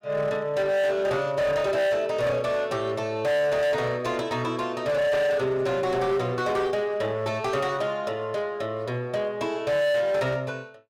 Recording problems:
distortion; hard clipping, signal-to-distortion ratio 8 dB

